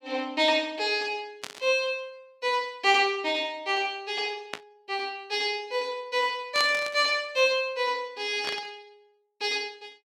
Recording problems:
static burst; 4 times, first at 1.5 s; peak -2 dB vs average level

